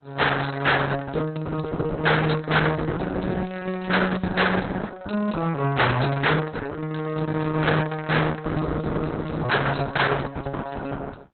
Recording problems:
lossy codec; Opus, log-spectral distance 6 dB, nothing above 4.1 kHz
distorted audio; hard clipping, uneven, signal-to-distortion ratio 7 dB

